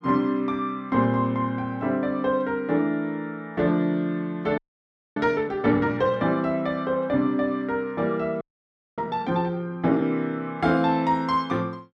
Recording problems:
frozen audio; at 4.5 s for 0.5 s and at 8.5 s for 0.5 s

